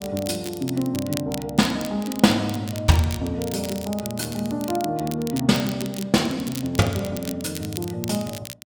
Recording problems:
crackle; vinyl, SNR 12 dB

